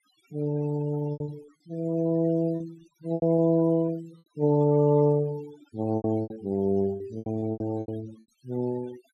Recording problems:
denoising artefacts; signal-to-artefact ratio 22 dB
lost packets; 10% of the sound replaced, filled with repeated pitch periods

